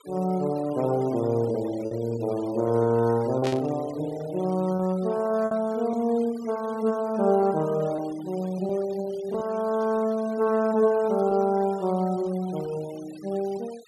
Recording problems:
noise reduction artefacts; signal-to-artefact ratio 22 dB
lost packets; 3% of the sound replaced, filled with repeated pitch periods
static burst; at 3.5 s; peak -5 dB vs average level

